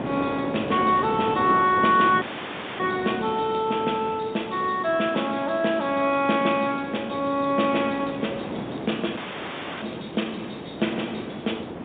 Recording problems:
telephone audio; 150 Hz to 3.7 kHz, G.711
wind on the microphone; below 710 Hz, SNR 10 dB
crackle; 4 times, first at 1 s; loose cable, SNR 29 dB
dropout; at 2 s for 0.5 s and at 9 s for 0.5 s

